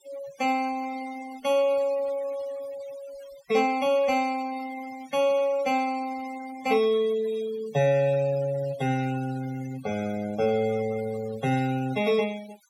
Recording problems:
denoising artefacts; signal-to-artefact ratio 17 dB

